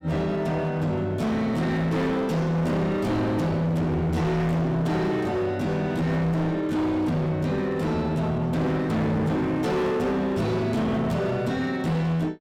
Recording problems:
distorted audio; hard clipping, signal-to-distortion ratio 7 dB

